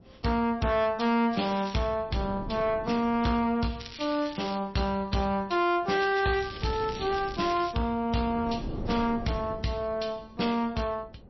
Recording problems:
lossy codec; MP3, log-spectral distance 5 dB, nothing above 5.7 kHz
distorted audio; soft clipping, signal-to-distortion ratio 10 dB
wind on the microphone; below 350 Hz, SNR 14 dB
crackle; at 1.5 s, at 4 s and from 6 to 7.5 s; loose cable, SNR 15 dB

